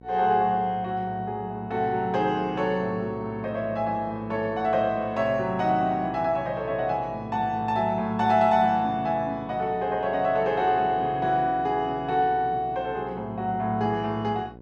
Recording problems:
hum; 60 Hz, harmonics up to 1 kHz, SNR 21 dB

